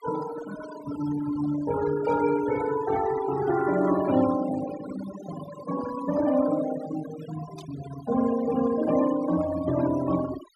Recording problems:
denoising artefacts; signal-to-artefact ratio 12 dB
burst of static; at 2 s and at 7.5 s; peak -20 dB vs average level

